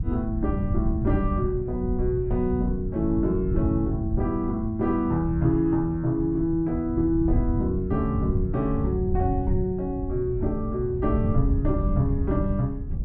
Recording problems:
wind noise; below 110 Hz, SNR 4 dB

